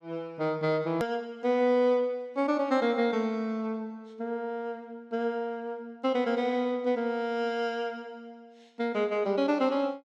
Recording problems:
edit click; at 1 s

